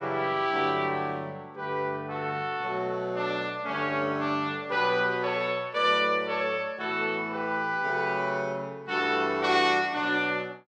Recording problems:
none

